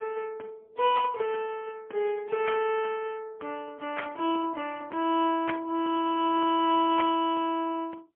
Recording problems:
telephone audio; 280 Hz to 3.3 kHz, AMR-NB, then MP3

